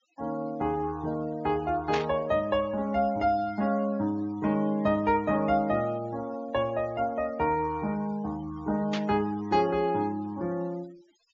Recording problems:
low-pass filter; nothing above 7.4 kHz
noise reduction artefacts; signal-to-artefact ratio 23 dB
static burst; at 2 s and at 9 s; peak -1 dB vs average level

